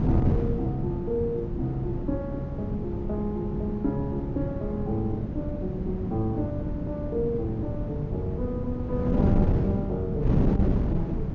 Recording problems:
low-pass filter; nothing above 6.9 kHz
wind on the microphone; below 240 Hz, SNR -1 dB

